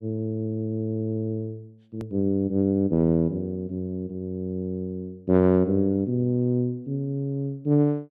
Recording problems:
hard cut with a click; at 2 s

